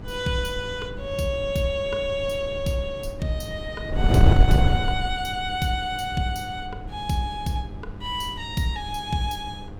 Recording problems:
hum; 50 Hz, harmonics up to 1.6 kHz, SNR 16 dB
wind noise; below 130 Hz, SNR 0 dB

